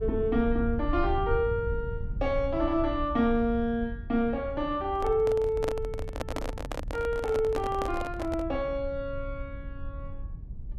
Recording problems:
rumble; below 82 Hz, SNR 9 dB
microphone handling noise; from 5 to 8.5 s; peak -1 dB vs average level

